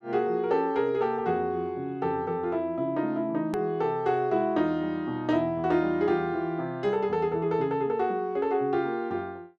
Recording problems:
edit click; at 3.5 s

